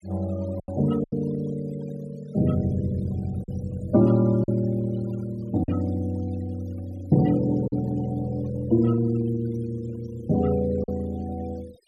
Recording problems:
denoising artefacts; signal-to-artefact ratio 22 dB
packet loss; 3% of the sound replaced, filled with silence

